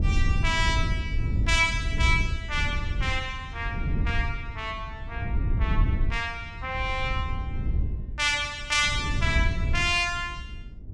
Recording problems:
wind noise; below 96 Hz, SNR 2 dB

